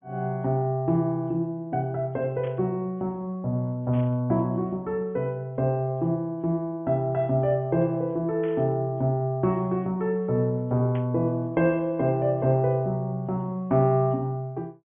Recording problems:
treble cut off; nothing above 3.3 kHz
static burst; 4 times, first at 2.5 s; peak -14 dB vs average level

